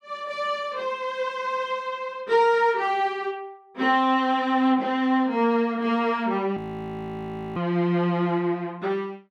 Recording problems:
audio freezing; at 6.5 s for 1 s

